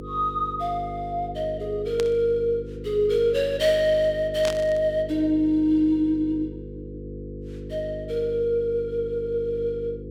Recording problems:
electrical hum; 50 Hz, harmonics up to 500 Hz, SNR 12 dB
burst of static; at 2 s and at 4.5 s; peak -4 dB vs average level

